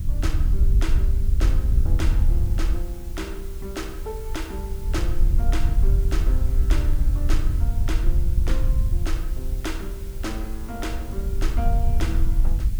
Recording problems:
hum; 50 Hz, harmonics up to 550 Hz, SNR 20 dB
background hiss; slope 0 dB per octave, SNR 12 dB
wind on the microphone; below 62 Hz, SNR -10 dB

